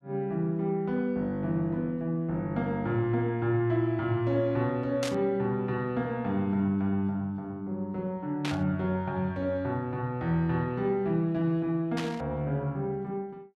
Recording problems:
burst of static; at 5 s, at 8.5 s and at 12 s; peak -2 dB vs average level

